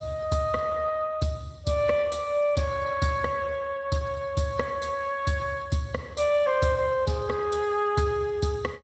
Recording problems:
codec artefacts; Speex, log-spectral distance 4 dB, nothing above 8 kHz

